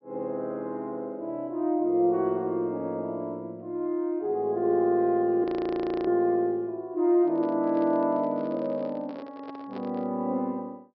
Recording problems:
low-pass filter; nothing above 5.5 kHz
frozen audio; at 5.5 s for 0.5 s
microphone handling noise; from 7 to 10 s; peak -11 dB vs average level

